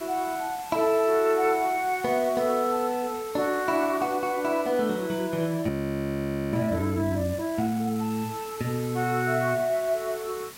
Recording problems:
hiss; slope -1 dB per octave, SNR 17 dB
audio freezing; at 5.5 s for 1 s

